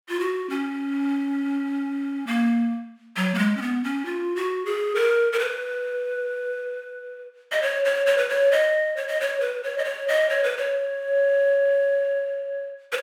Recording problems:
none

